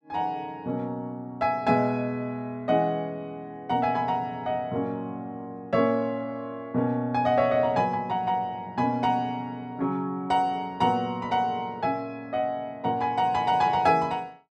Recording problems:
none

